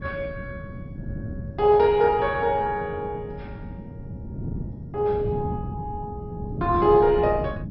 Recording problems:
lossy codec; MP2, log-spectral distance 2 dB, nothing above 4.9 kHz
wind noise; below 210 Hz, SNR 12 dB

